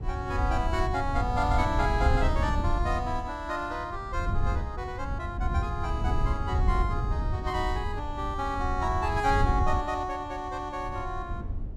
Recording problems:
rumble; below 94 Hz, SNR 1 dB

